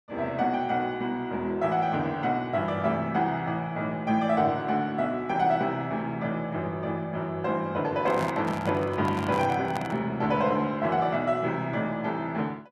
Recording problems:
handling noise; from 8 to 10 s; peak -2 dB vs average level

